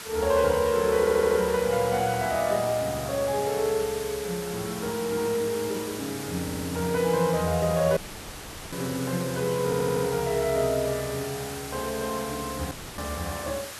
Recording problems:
background hiss; slope -1 dB per octave, SNR 10 dB
audio stuttering; at 1 s, at 6.5 s and at 9.5 s
audio cutting out; at 8 s for 1 s and at 13 s

